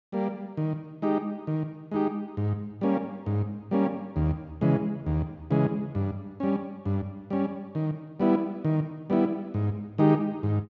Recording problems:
none

